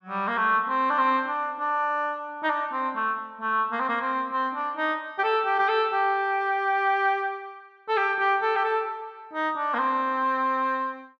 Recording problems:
none

